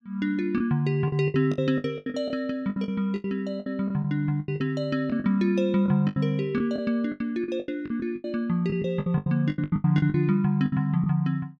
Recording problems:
lost packets; 17% of the sound replaced, filled with the last packet

